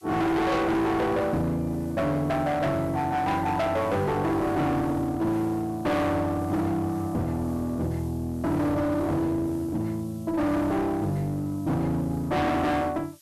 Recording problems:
distortion; hard clipping, uneven, signal-to-distortion ratio 6 dB
background hiss; slope +6 dB per octave, SNR 27 dB

